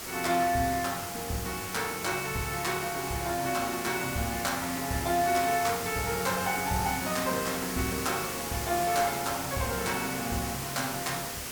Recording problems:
background hiss; slope -2 dB per octave, SNR 5 dB

